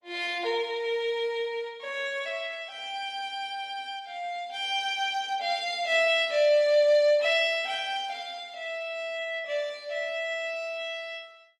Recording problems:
codec artefacts; Opus, log-spectral distance 2 dB, nothing above 18.3 kHz

